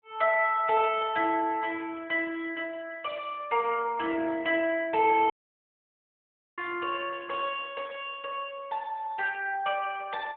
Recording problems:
phone line; 260 Hz to 3.6 kHz, AMR-NB
dropout; at 5.5 s for 1.5 s

